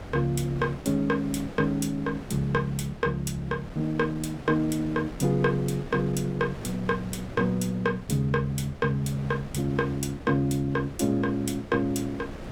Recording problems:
wind noise; below 590 Hz, SNR 14 dB

